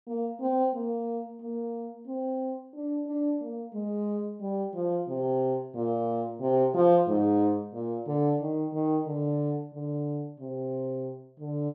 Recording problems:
none

